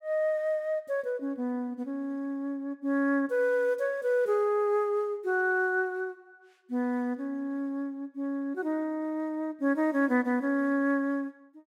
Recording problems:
none

